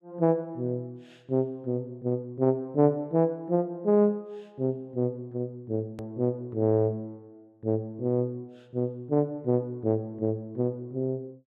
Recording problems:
hard cut with a click; at 6 s

